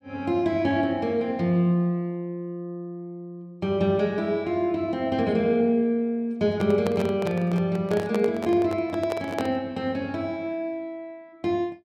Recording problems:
microphone handling noise; from 6.5 to 9.5 s; peak -1 dB vs average level

